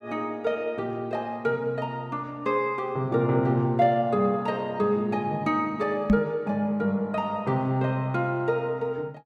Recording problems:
knock on the microphone; at 6 s; peak +9 dB vs average level

